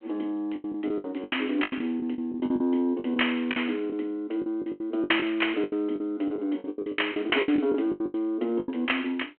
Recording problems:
telephone audio; 220 Hz to 3.3 kHz, G.726
packet loss; 18% of the sound replaced, filled with the last packet

